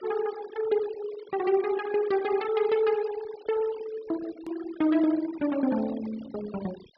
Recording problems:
treble cut off; nothing above 5.5 kHz
noise reduction artefacts; signal-to-artefact ratio 17 dB
click at an edit; at 4.5 s

